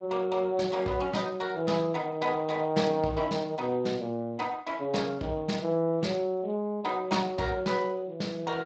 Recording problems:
lossy codec; Speex, log-spectral distance 3 dB, nothing above 7.3 kHz

